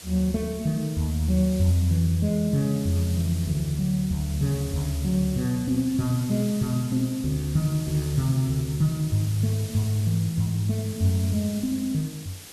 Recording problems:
hiss; SNR 15 dB

